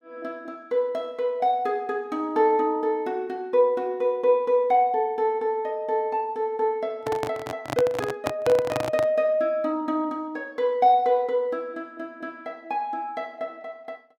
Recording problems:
microphone handling noise; from 7 to 9 s; peak +1 dB vs average level

